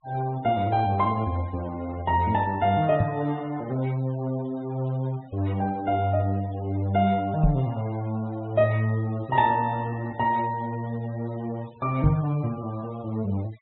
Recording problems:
treble cut off; nothing above 4 kHz
noise reduction artefacts; signal-to-artefact ratio 23 dB
microphone thump; at 3 s, at 7.5 s and at 12 s; peak +7 dB vs average level

